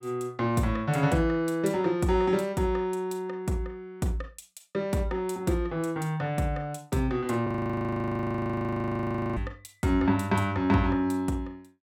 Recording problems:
frozen audio; at 7.5 s for 2 s

